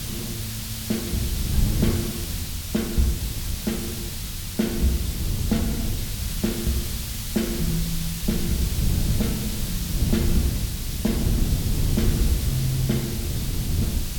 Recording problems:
hum; 50 Hz, harmonics up to 350 Hz, SNR 21 dB
background hiss; slope +2 dB per octave, SNR 3 dB
rumble; below 82 Hz, SNR 11 dB
wind on the microphone; below 150 Hz, SNR 1 dB

